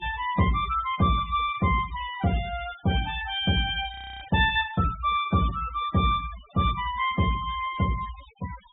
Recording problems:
treble cut off; nothing above 4 kHz
noise reduction artefacts; signal-to-artefact ratio 18 dB
audio freezing; at 4 s

